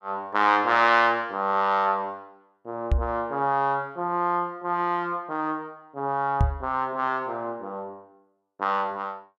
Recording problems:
knock on the microphone; at 3 s and at 6.5 s; peak +6 dB vs average level

